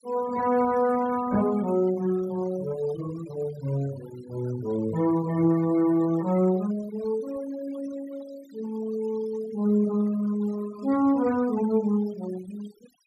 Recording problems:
noise reduction artefacts; signal-to-artefact ratio 19 dB

